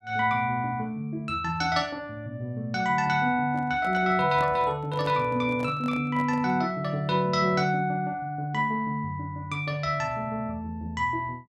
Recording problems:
microphone handling noise; from 3.5 to 6.5 s; peak -8 dB vs average level

